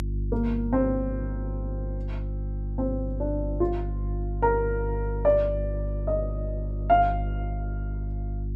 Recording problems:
electrical hum; 50 Hz, harmonics up to 350 Hz, SNR 4 dB

